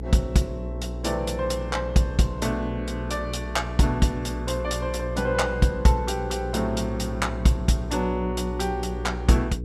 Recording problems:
mains hum; 60 Hz, harmonics up to 480 Hz, SNR 7 dB

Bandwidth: 13.5 kHz